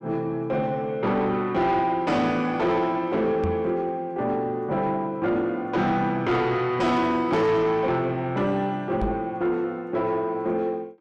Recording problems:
distorted audio; soft clipping, signal-to-distortion ratio 11 dB
microphone thump; at 3.5 s and at 9 s; peak 0 dB vs average level

